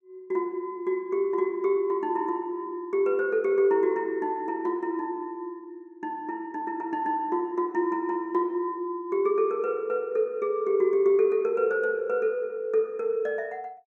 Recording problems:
none

